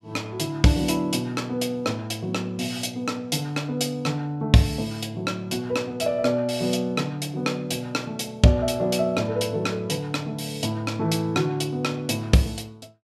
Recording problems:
none

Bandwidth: 14.5 kHz